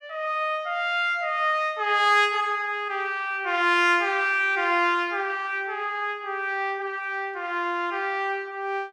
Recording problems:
none

